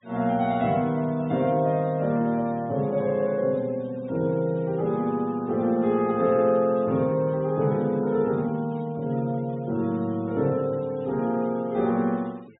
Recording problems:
low-pass filter; nothing above 4 kHz
noise reduction artefacts; signal-to-artefact ratio 28 dB

